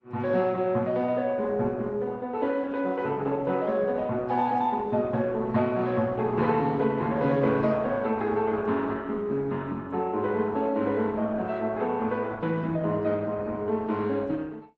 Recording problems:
lossy codec; Opus, then AAC, log-spectral distance 2 dB

